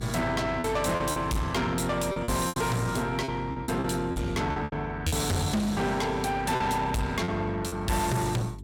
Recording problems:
distortion; soft clipping, signal-to-distortion ratio 7 dB
hum; 50 Hz, harmonics up to 400 Hz, SNR 14 dB
lost packets; 9% of the sound replaced, filled with repeated pitch periods

